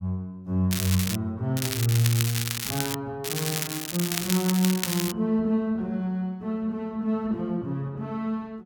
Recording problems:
crackle; at 0.5 s, from 1.5 to 3 s and from 3 to 5 s; loose cable, SNR 2 dB

